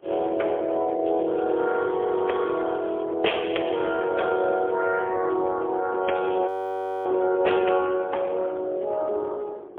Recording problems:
phone line; 320 Hz to 3.4 kHz, AMR-NB, then MP3
wind on the microphone; below 540 Hz, SNR 23 dB
crackle; from 1 to 3 s, at 3.5 s and from 6 to 7 s; loose cable, SNR 28 dB
frozen audio; at 6.5 s for 0.5 s

